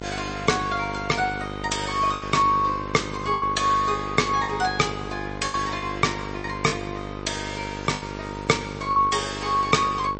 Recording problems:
codec artefacts; MP3, log-spectral distance 4 dB, nothing above 8.2 kHz
electrical hum; 50 Hz, harmonics up to 2.1 kHz, SNR 10 dB
lost packets; 6% of the sound replaced, filled with the last packet
crackling; at 7.5 s; loose cable, SNR 27 dB

